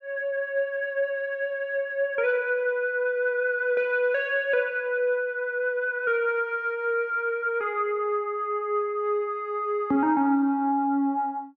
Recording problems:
none

